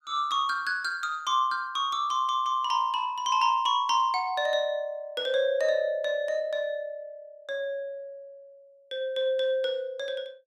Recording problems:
none

